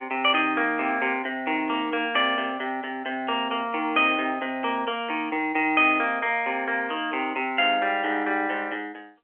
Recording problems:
phone line; 280 Hz to 3.4 kHz, G.711

